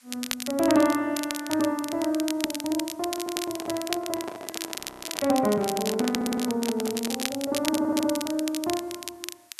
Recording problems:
background hiss; SNR 28 dB
crackling; vinyl, SNR 7 dB
microphone handling noise; from 3 to 7.5 s; peak -5 dB vs average level
stutter; at 3 s, at 6 s and at 7.5 s
audio freezing; at 5 s

